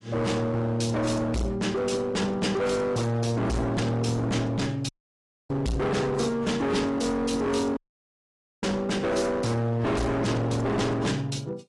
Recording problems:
lossy codec; AAC, log-spectral distance 3 dB, nothing above 10.7 kHz
distortion; hard clipping, signal-to-distortion ratio 6 dB
audio cutting out; at 5 s for 0.5 s and at 8 s for 1 s

